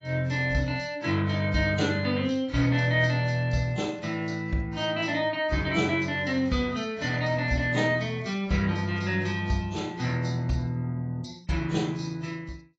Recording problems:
lossy codec; AAC, log-spectral distance 4 dB, nothing above 7.6 kHz

